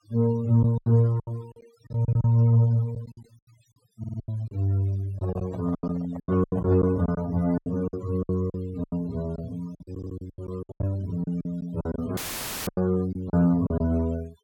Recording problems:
denoising artefacts; signal-to-artefact ratio 23 dB
lost packets; 15% of the sound replaced, filled with silence
stutter; at 4 s and at 10 s
microphone handling noise; from 5 to 7 s; peak -9 dB vs average level
audio cutting out; at 12 s for 0.5 s; filled with static

